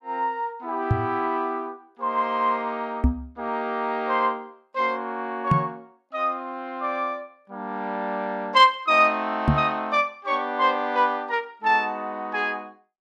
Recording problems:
microphone thump; 4 times, first at 1 s; peak +7 dB vs average level

